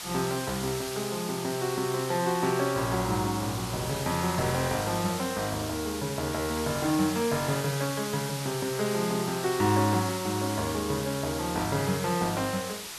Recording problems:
background hiss; slope +1 dB per octave, SNR 7 dB

